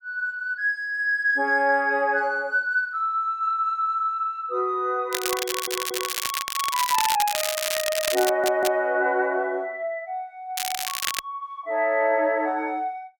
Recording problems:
crackling; from 5 to 8.5 s and at 11 s; loose cable, SNR 3 dB
audio stuttering; at 5.5 s and at 8.5 s

